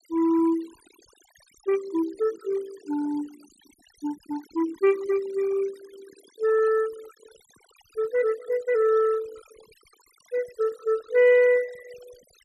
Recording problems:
noise reduction artefacts; signal-to-artefact ratio 22 dB

